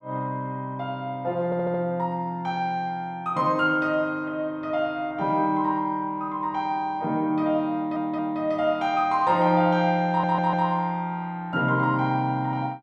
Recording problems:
audio stuttering; at 1.5 s, at 7.5 s and at 10 s

